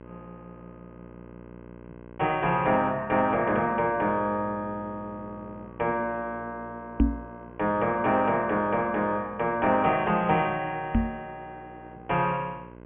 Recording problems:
treble cut off; nothing above 3.1 kHz
hum; 60 Hz, harmonics up to 2.2 kHz, SNR 20 dB
microphone thump; at 7 s and at 11 s; peak +8 dB vs average level

